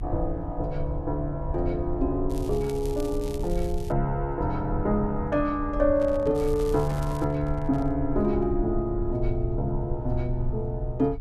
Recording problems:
rumble; below 66 Hz, SNR 8 dB
crackle; from 2.5 to 4 s and at 6.5 s; loose cable, SNR 20 dB
handling noise; from 6 to 8 s; peak -9 dB vs average level

